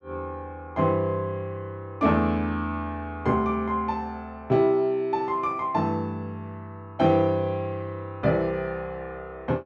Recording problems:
none

